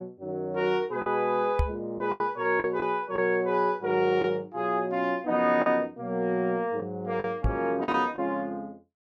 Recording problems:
lost packets; 5% of the sound replaced, filled with the last packet
microphone thump; at 1.5 s and at 7.5 s; peak +4 dB vs average level

